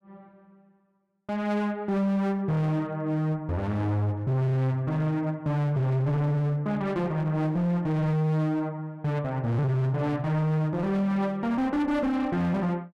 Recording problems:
distorted audio; hard clipping, uneven, signal-to-distortion ratio 7 dB

